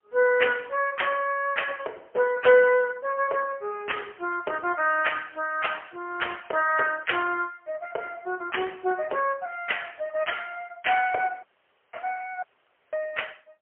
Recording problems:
telephone audio; 340 Hz to 3.3 kHz, AMR-NB, then MP3
audio cutting out; at 11 s for 0.5 s and at 12 s for 0.5 s

